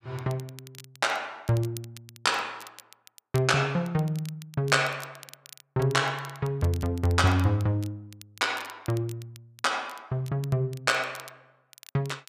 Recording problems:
crackle; vinyl, SNR 21 dB

